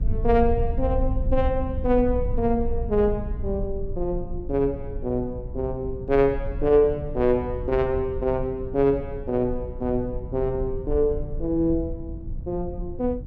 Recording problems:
electrical hum; 60 Hz, harmonics up to 600 Hz, SNR 20 dB
low-frequency rumble; below 72 Hz, SNR 8 dB

